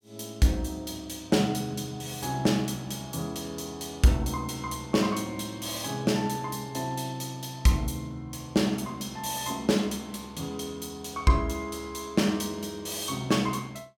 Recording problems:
none

